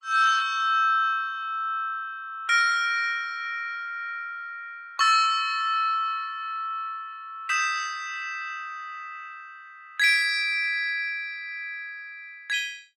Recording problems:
codec artefacts; Opus, log-spectral distance 2 dB, nothing above 15.6 kHz

